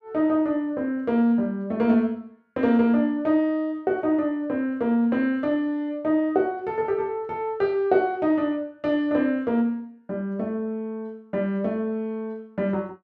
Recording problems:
none

